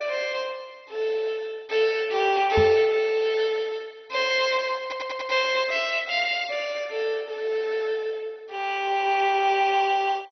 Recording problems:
lossy compression; MP2, log-spectral distance 4 dB, nothing above 6 kHz
microphone bump; at 2.5 s; peak +1 dB vs average level
audio stuttering; at 5 s

